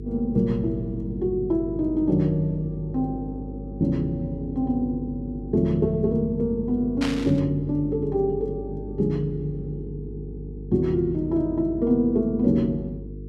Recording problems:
electrical hum; 50 Hz, harmonics up to 450 Hz, SNR 12 dB
static burst; at 7 s; peak -3 dB vs average level

